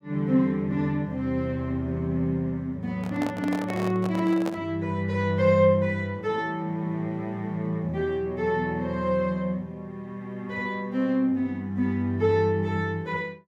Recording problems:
microphone handling noise; from 3 to 4.5 s; peak -3 dB vs average level

